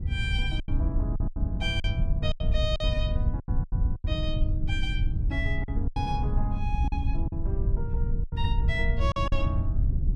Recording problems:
rumble; below 94 Hz, SNR -5 dB
packet loss; 10% of the sound replaced, filled with silence

